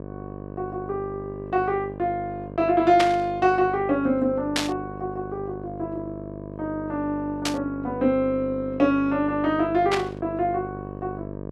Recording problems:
hum; 50 Hz, harmonics up to 1.2 kHz, SNR 12 dB
burst of static; 4 times, first at 3 s; peak +5 dB vs average level

